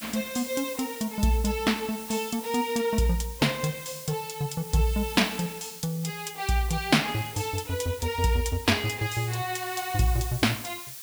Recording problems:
hiss; slope +3 dB per octave, SNR 12 dB

